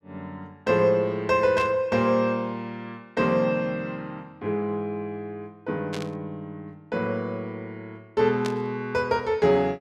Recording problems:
static burst; at 1.5 s, at 6 s and at 8.5 s; peak -5 dB vs average level

